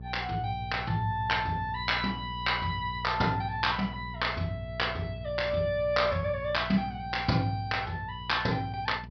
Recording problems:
treble missing; nothing above 5.5 kHz
hum; 60 Hz, harmonics up to 480 Hz, SNR 12 dB

